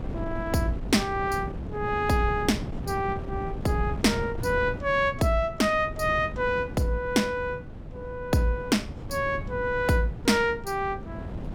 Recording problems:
wind on the microphone; below 250 Hz, SNR 10 dB

